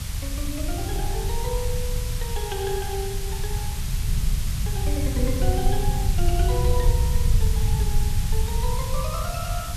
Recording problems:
background hiss; slope +1 dB per octave, SNR 3 dB
rumble; below 86 Hz, SNR -6 dB

